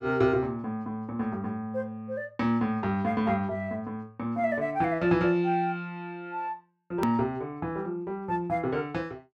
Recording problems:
hard cut with a click; at 7 s

